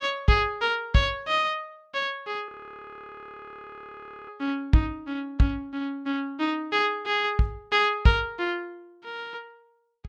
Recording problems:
frozen audio; at 2.5 s for 2 s

